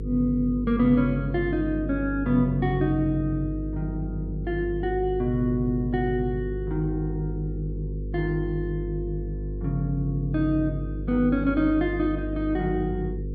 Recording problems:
hum; 50 Hz, harmonics up to 500 Hz, SNR 6 dB

